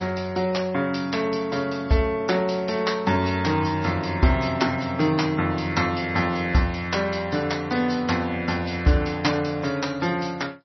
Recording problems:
codec artefacts; MP3, log-spectral distance 5 dB, nothing above 5.8 kHz

